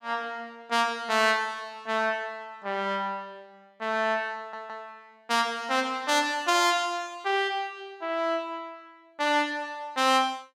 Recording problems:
audio stuttering; at 4.5 s

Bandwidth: 16.5 kHz